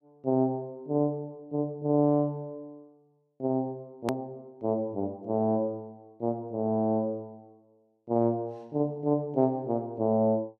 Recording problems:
click at an edit; at 4 s

